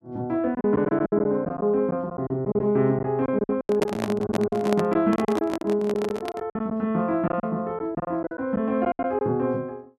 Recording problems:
lost packets; 12% of the sound replaced, filled with silence
handling noise; from 3.5 to 6.5 s; peak +3 dB vs average level

